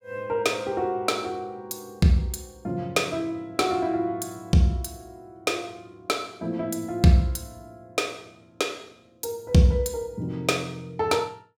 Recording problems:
none

